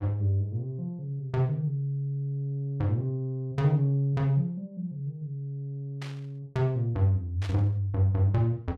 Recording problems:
burst of static; at 6 s and at 7.5 s; peak -9 dB vs average level

